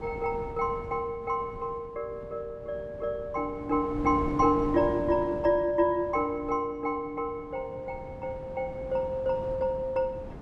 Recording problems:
wind noise; below 370 Hz, SNR 13 dB

